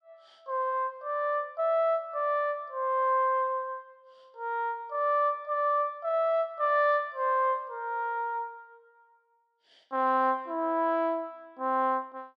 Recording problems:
none

